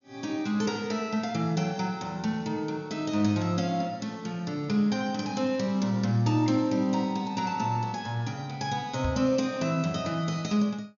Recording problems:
treble missing; nothing above 6.8 kHz
knock on the microphone; at 9 s; peak +1 dB vs average level

